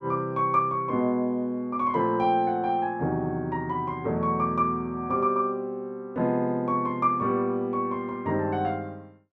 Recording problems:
none

